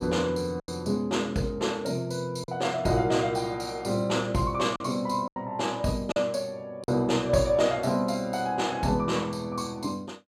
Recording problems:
lost packets; 3% of the sound replaced, filled with silence

